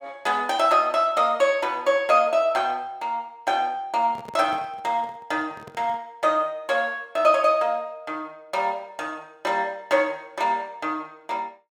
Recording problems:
handling noise; from 4 to 6 s; peak -12 dB vs average level

